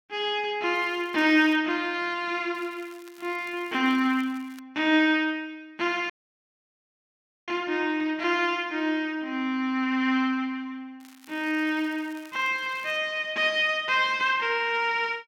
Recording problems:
crackle; at 0.5 s, from 2.5 to 4.5 s and from 11 to 13 s; loose cable, SNR 27 dB
audio cutting out; at 6 s for 1.5 s

